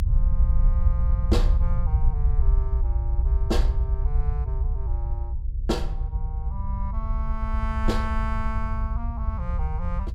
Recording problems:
electrical hum; 50 Hz, harmonics up to 550 Hz, SNR 19 dB
rumble; below 64 Hz, SNR -8 dB

